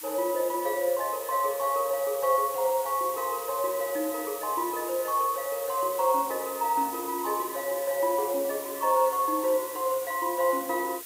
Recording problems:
hiss; slope +2 dB per octave, SNR 10 dB

